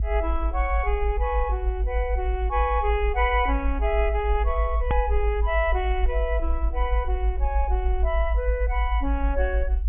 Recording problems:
treble missing; nothing above 3.4 kHz
rumble; below 58 Hz, strongest tone 50 Hz, SNR 0 dB
hard cut with a click; at 5 s

